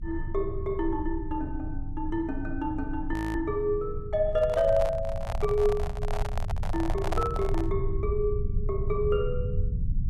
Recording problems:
low-frequency rumble; below 92 Hz, strongest tone 22 Hz, SNR 5 dB
frozen audio; at 3 s
microphone handling noise; from 4.5 to 8 s; peak +2 dB vs average level

